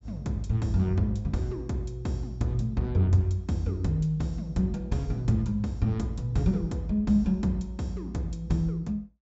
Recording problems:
treble missing; nothing above 8 kHz

